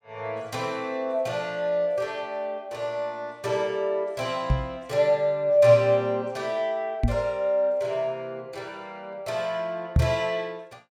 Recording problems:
microphone bump; at 4.5 s, at 7 s and at 10 s; peak +8 dB vs average level

